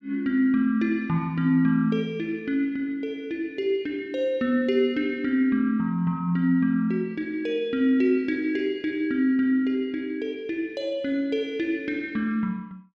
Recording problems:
none

